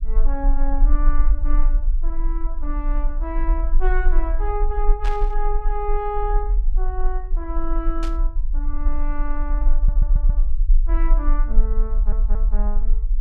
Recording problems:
rumble; below 36 Hz, strongest tone 18 Hz, SNR -8 dB
burst of static; at 5 s and at 8 s; peak -1 dB vs average level
stutter; at 10 s and at 12 s

